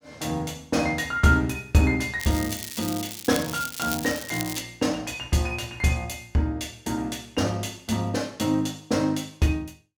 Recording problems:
crackle; from 2 to 4.5 s; loose cable, SNR 8 dB

